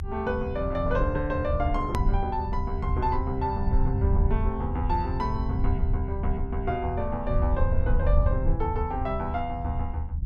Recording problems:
low-frequency rumble; below 82 Hz, SNR -1 dB
hard cut with a click; at 2 s

